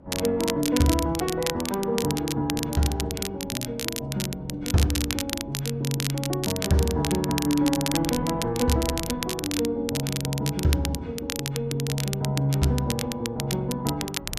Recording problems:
hum; 50 Hz, harmonics up to 350 Hz, SNR 23 dB
wind noise; below 290 Hz, SNR 21 dB
crackle; vinyl, SNR 6 dB

